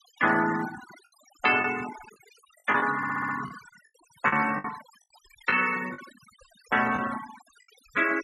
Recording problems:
noise reduction artefacts; signal-to-artefact ratio 13 dB
packet loss; 6% of the sound replaced, filled with the last packet
stutter; at 3 s

